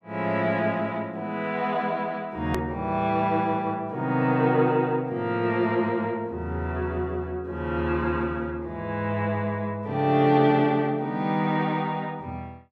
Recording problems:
click at an edit; at 2.5 s

